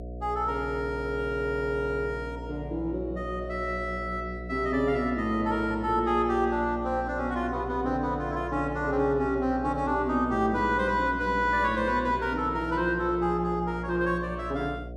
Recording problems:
electrical hum; 60 Hz, harmonics up to 720 Hz, SNR 11 dB

